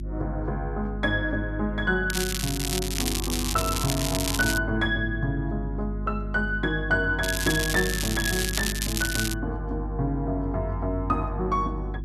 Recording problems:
hum; 50 Hz, harmonics up to 350 Hz, SNR 6 dB
crackle; from 2 to 4.5 s and from 7 to 9.5 s; loose cable, SNR 2 dB

